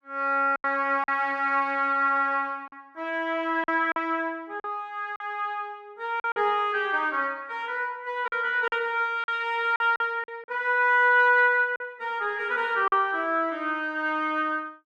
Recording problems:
lost packets; 5% of the sound replaced, filled with silence

